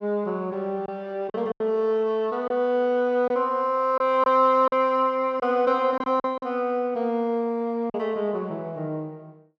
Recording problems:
packet loss; 5% of the sound replaced, filled with silence

